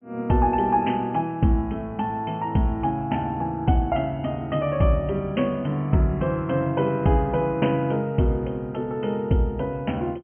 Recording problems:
treble missing; nothing above 3.1 kHz

